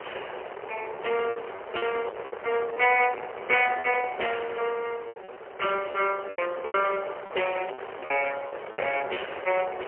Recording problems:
telephone audio; 340 Hz to 3.1 kHz, AMR-NB, then MP3
distorted audio; hard clipping, uneven, signal-to-distortion ratio 6 dB
wind noise; below 1.2 kHz, SNR 11 dB
lost packets; 9% of the sound replaced, filled with repeated pitch periods
crackle; from 7.5 to 9 s; loose cable, SNR 28 dB

